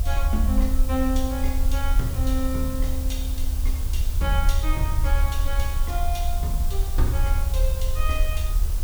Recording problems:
hiss; SNR 7 dB
low-frequency rumble; below 70 Hz, SNR -5 dB

